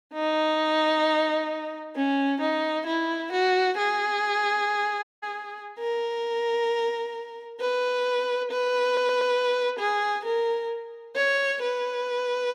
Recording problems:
dropout; at 5 s
stutter; at 9 s

